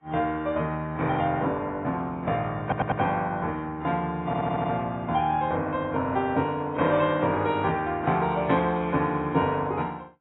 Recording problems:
lossy compression; AAC, log-spectral distance 2 dB, nothing above 3.2 kHz
stutter; at 2.5 s and at 4.5 s

